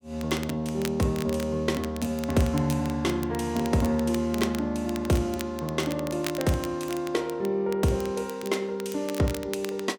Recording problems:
crackling; vinyl, SNR 14 dB

